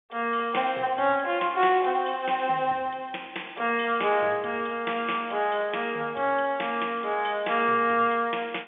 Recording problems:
telephone audio; 300 Hz to 3.6 kHz, G.711

